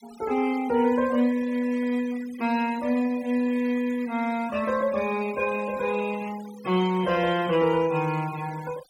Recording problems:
noise reduction artefacts; signal-to-artefact ratio 19 dB

